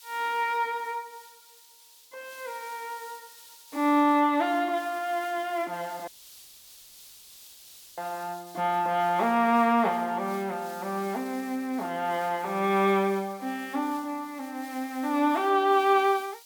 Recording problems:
hiss; SNR 21 dB
dropout; at 6 s for 2 s

